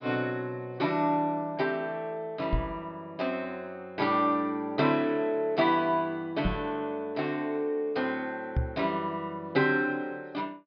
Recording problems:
treble missing; nothing above 5.5 kHz
microphone thump; at 2.5 s, at 6.5 s and at 8.5 s; peak +5 dB vs average level

